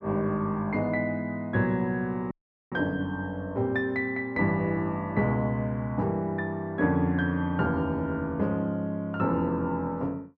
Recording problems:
audio cutting out; at 2.5 s

